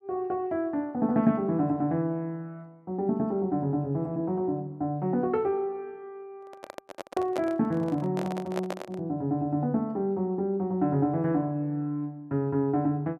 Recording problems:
microphone handling noise; from 6.5 to 9 s; peak -2 dB vs average level

